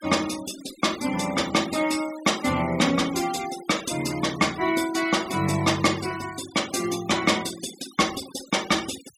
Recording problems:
denoising artefacts; signal-to-artefact ratio 14 dB

